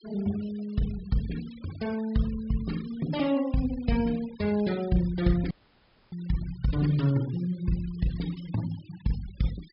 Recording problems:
treble missing; nothing above 5.5 kHz
noise reduction artefacts; signal-to-artefact ratio 19 dB
audio cutting out; at 5.5 s for 0.5 s

